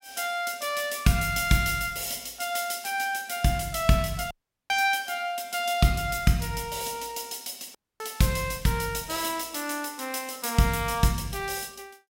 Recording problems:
dropout; at 4.5 s and at 8 s

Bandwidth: 16 kHz